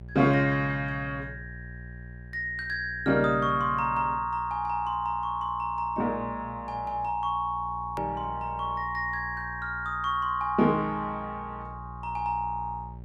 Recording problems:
hum; 60 Hz, harmonics up to 600 Hz, SNR 16 dB
click at an edit; at 8 s

